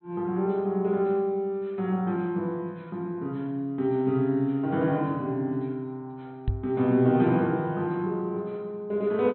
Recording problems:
treble cut off; nothing above 4.1 kHz
knock on the microphone; at 6.5 s; peak +3 dB vs average level

